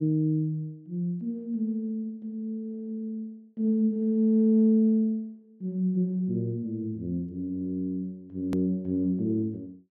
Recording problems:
edit click; at 8.5 s

